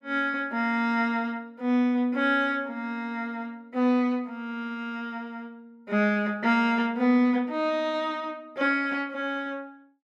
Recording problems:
none

